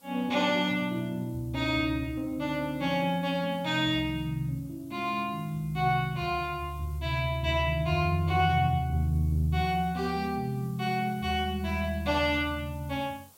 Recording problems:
hiss; SNR 27 dB

